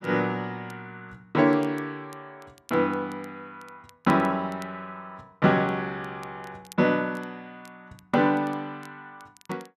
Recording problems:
crackling; vinyl, SNR 28 dB

